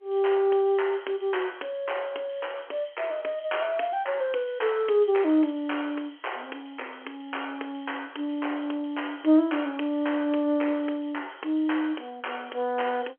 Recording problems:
phone line; 260 Hz to 3.3 kHz, G.711

